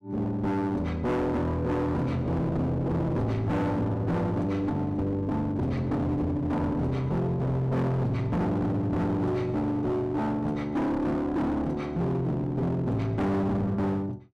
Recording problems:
distorted audio; hard clipping, uneven, signal-to-distortion ratio 5 dB

